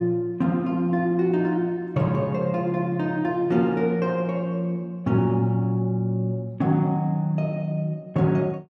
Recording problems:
none

